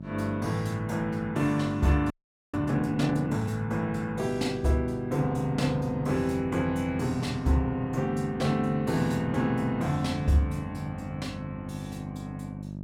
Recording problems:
hum; 50 Hz, harmonics up to 650 Hz, SNR 11 dB
audio freezing; at 2 s

